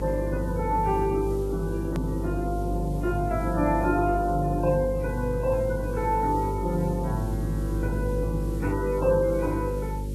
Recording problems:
lossy compression; MP3, log-spectral distance 2 dB, nothing above 13.1 kHz
hum; 50 Hz, harmonics up to 550 Hz, SNR 4 dB
background hiss; SNR 24 dB
edit click; at 2 s

